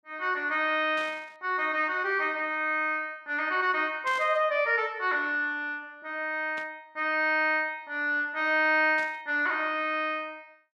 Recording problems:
burst of static; 4 times, first at 1 s; peak -12 dB vs average level

